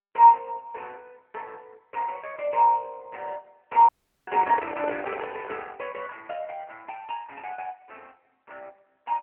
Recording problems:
phone line; 320 Hz to 3.4 kHz, AMR-NB
dropout; at 4 s
handling noise; from 4.5 to 5.5 s; peak -2 dB vs average level

